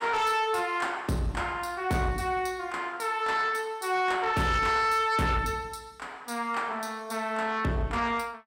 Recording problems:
distorted audio; soft clipping, signal-to-distortion ratio 11 dB

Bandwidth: 16.5 kHz